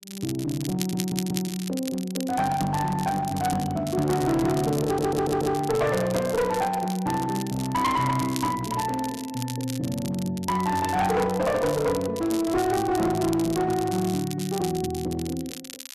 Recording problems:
distortion; hard clipping, uneven, signal-to-distortion ratio 10 dB
crackling; vinyl, SNR 13 dB
stutter; at 1 s and at 5 s

